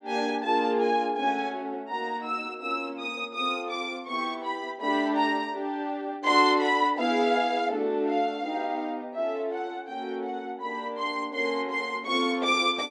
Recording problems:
none

